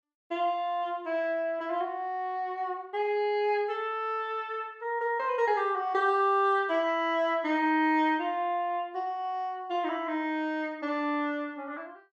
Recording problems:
none

